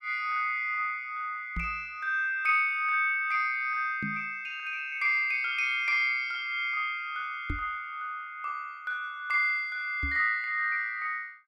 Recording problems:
knock on the microphone; 4 times, first at 1.5 s; peak -2 dB vs average level

